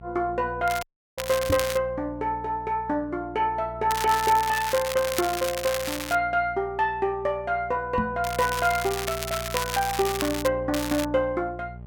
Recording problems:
hum; 60 Hz, harmonics up to 660 Hz, SNR 16 dB
crackling; 4 times, first at 0.5 s; loose cable, SNR 7 dB
audio cutting out; at 1 s
knock on the microphone; at 1.5 s and at 8 s; peak +2 dB vs average level

